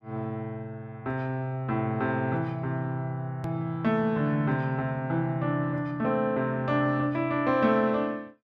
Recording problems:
click at an edit; at 3.5 s

